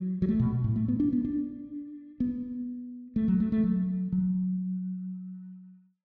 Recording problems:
none

